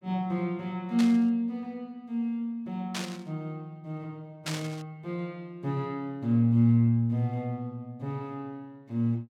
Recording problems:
burst of static; at 1 s, at 3 s and at 4.5 s; peak -1 dB vs average level

